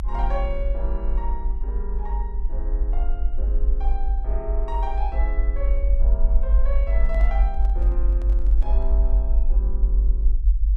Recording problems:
rumble; below 50 Hz, SNR -11 dB
microphone handling noise; from 7 to 9 s; peak -5 dB vs average level

